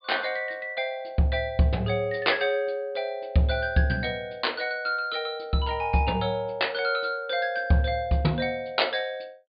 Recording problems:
treble cut off; nothing above 4.7 kHz

